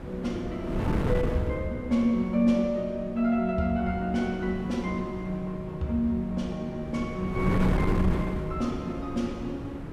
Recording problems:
wind noise; below 330 Hz, SNR 5 dB

